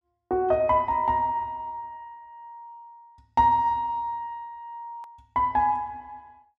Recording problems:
hard cut with a click; at 5 s

